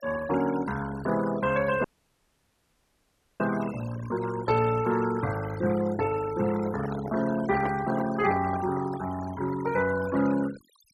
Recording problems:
denoising artefacts; signal-to-artefact ratio 14 dB
dropout; at 2 s for 1.5 s
microphone handling noise; from 6.5 to 9 s; peak -3 dB vs average level

